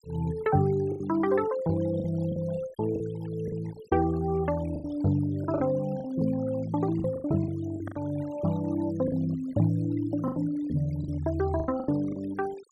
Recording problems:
denoising artefacts; signal-to-artefact ratio 22 dB
packet loss; 9% of the sound replaced, filled with the last packet

